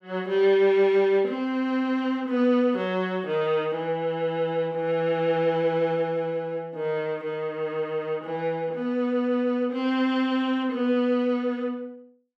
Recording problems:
none

